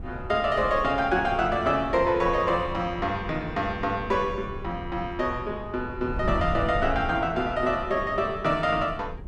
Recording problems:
wind on the microphone; below 140 Hz, SNR 12 dB

